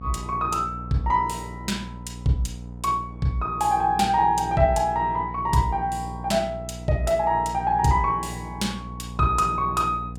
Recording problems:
hum; 60 Hz, harmonics up to 720 Hz, SNR 13 dB

